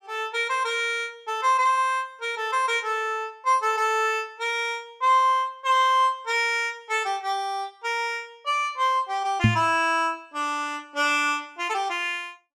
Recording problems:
microphone thump; at 9.5 s; peak +8 dB vs average level

